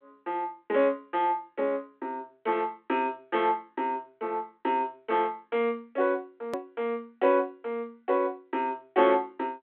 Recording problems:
telephone audio; 240 Hz to 3.6 kHz, G.726
edit click; at 6.5 s

